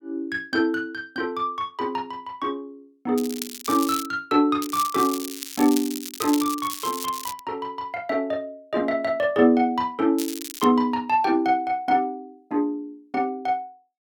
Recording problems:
crackle; at 3 s, from 4.5 to 7.5 s and at 10 s; loose cable, SNR 9 dB

